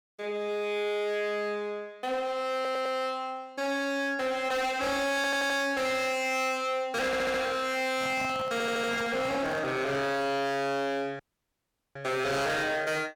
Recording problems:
distorted audio; hard clipping, signal-to-distortion ratio 8 dB
stutter; 4 times, first at 2.5 s
handling noise; from 8 to 9.5 s; peak -6 dB vs average level
audio cutting out; at 11 s for 1 s

